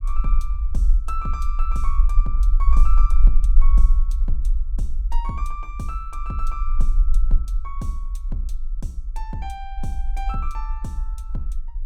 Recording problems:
rumble; below 42 Hz, SNR -9 dB

